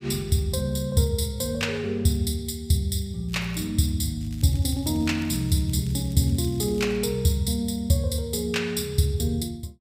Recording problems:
crackling; at 3.5 s and from 4 to 7 s; loose cable, SNR 23 dB

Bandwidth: 15.5 kHz